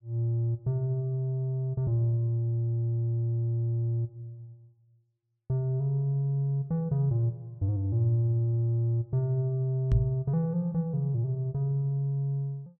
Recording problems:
microphone thump; at 10 s; peak +7 dB vs average level

